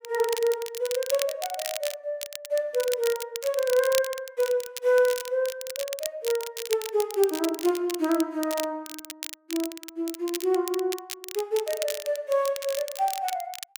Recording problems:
crackling; vinyl, SNR 9 dB

